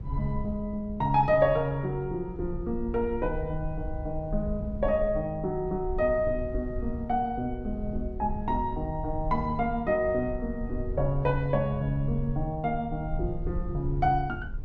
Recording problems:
rumble; below 78 Hz, SNR 9 dB

